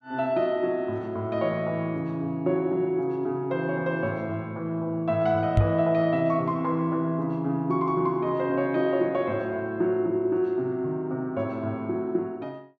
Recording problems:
microphone bump; at 5.5 s; peak +7 dB vs average level

